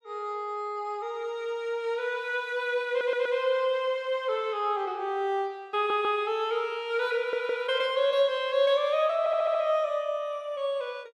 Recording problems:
audio stuttering; 4 times, first at 3 s

